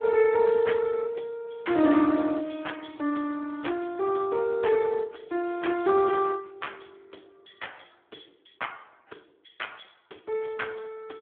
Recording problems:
telephone audio; 190 Hz to 3.4 kHz, Speex

